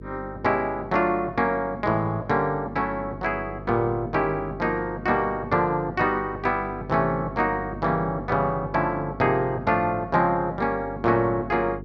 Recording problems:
electrical hum; 50 Hz, harmonics up to 450 Hz, SNR 15 dB

